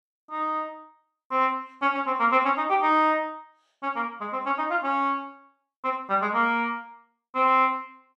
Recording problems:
none

